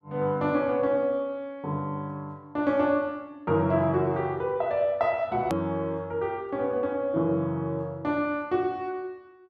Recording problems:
hard cut with a click; at 5.5 s

